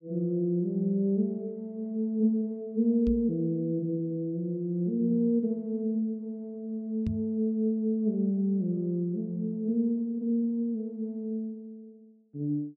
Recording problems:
knock on the microphone; at 3 s and at 7 s; peak 0 dB vs average level

